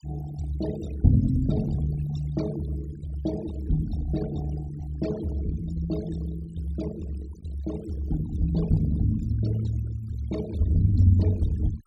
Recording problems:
noise reduction artefacts; signal-to-artefact ratio 17 dB

